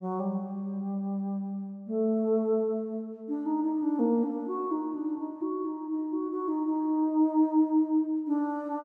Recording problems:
none

